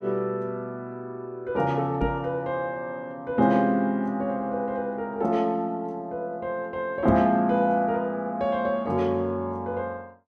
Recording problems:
microphone thump; at 2 s and at 7 s; peak +1 dB vs average level

